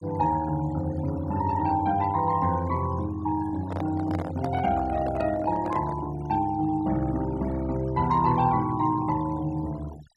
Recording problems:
noise reduction artefacts; signal-to-artefact ratio 18 dB
microphone handling noise; from 3.5 to 6 s; peak -4 dB vs average level

